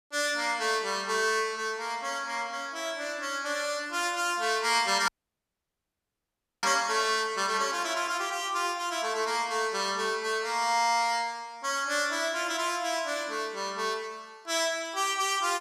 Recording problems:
dropout; at 5 s for 1.5 s

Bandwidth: 14.5 kHz